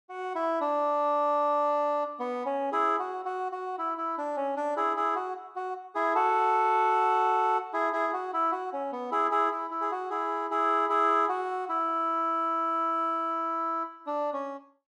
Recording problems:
none

